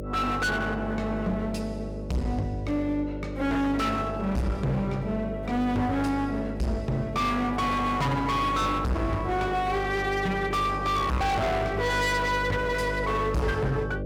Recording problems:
distortion; hard clipping, uneven, signal-to-distortion ratio 5 dB
electrical hum; 50 Hz, harmonics up to 600 Hz, SNR 8 dB

